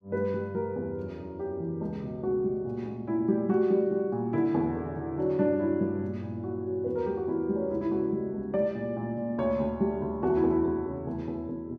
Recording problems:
none

